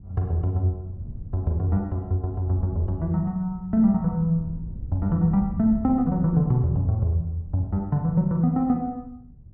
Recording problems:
wind on the microphone; below 120 Hz, SNR 15 dB

